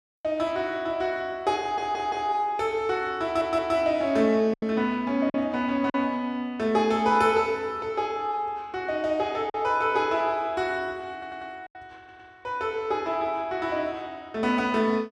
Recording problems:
lost packets; 2% of the sound replaced, filled with silence
stutter; 4 times, first at 1.5 s

